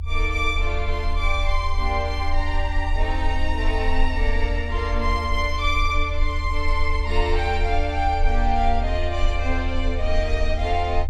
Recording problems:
rumble; below 76 Hz, strongest tone 20 Hz, SNR 1 dB

